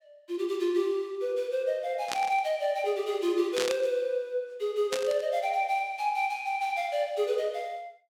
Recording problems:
burst of static; at 2 s, at 3.5 s and at 5 s; peak +2 dB vs average level

